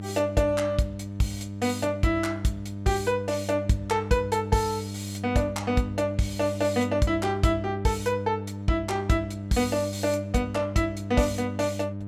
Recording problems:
hum; 50 Hz, harmonics up to 700 Hz, SNR 8 dB

